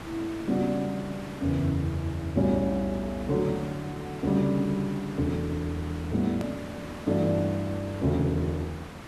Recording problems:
background hiss; SNR 13 dB
click at an edit; at 6.5 s

